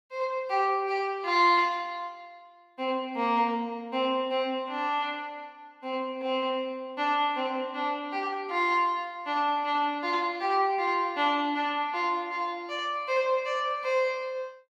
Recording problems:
none

